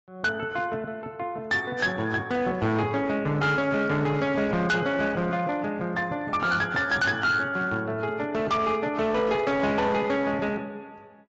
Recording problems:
lossy compression; AAC, log-spectral distance 2 dB, nothing above 7.3 kHz
distortion; hard clipping, signal-to-distortion ratio 11 dB

